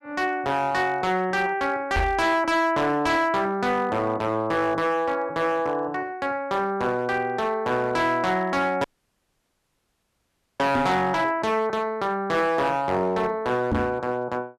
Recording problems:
distortion; hard clipping, uneven, signal-to-distortion ratio 10 dB
microphone bump; at 2 s, at 11 s and at 14 s; peak +2 dB vs average level
dropout; at 9 s for 2 s

